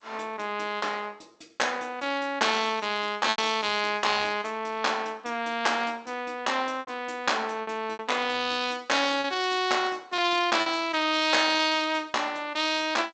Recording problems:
lossy codec; G.722, log-spectral distance 4 dB, nothing above 7.3 kHz
lost packets; 4% of the sound replaced, filled with repeated pitch periods

